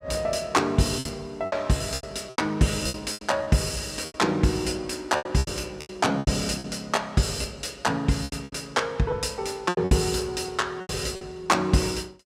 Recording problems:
lost packets; 12% of the sound replaced, filled with repeated pitch periods

